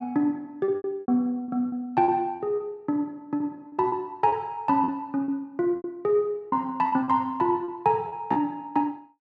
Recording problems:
lost packets; 11% of the sound replaced, filled with repeated pitch periods

